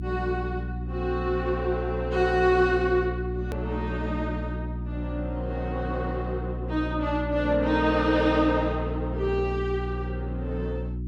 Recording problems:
hum; 60 Hz, harmonics up to 360 Hz, SNR 5 dB
edit click; at 3.5 s

